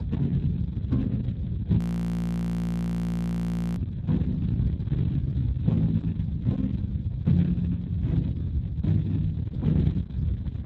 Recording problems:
lossy compression; Speex, log-spectral distance 2 dB, nothing above 13.1 kHz
distortion; soft clipping, signal-to-distortion ratio 13 dB
wind noise; below 170 Hz, SNR 3 dB
audio freezing; at 2 s for 2 s

